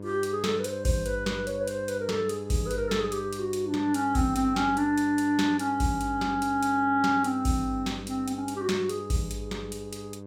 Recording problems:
hum; 50 Hz, harmonics up to 1.1 kHz, SNR 13 dB

